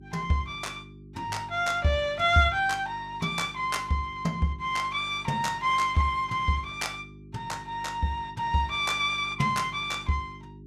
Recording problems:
hum; 50 Hz, harmonics up to 400 Hz, SNR 20 dB

